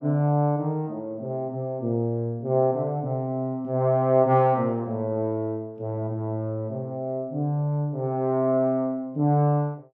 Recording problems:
none

